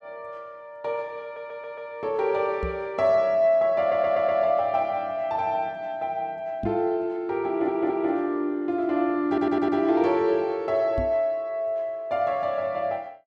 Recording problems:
stutter; 4 times, first at 1 s
microphone thump; at 2.5 s, at 6.5 s and at 11 s; peak -3 dB vs average level

